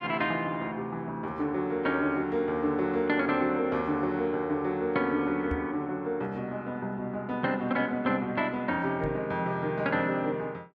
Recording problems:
microphone bump; at 5.5 s and at 9 s; peak -1 dB vs average level

